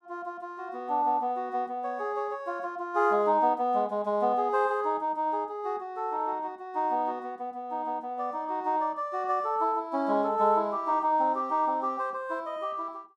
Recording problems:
none

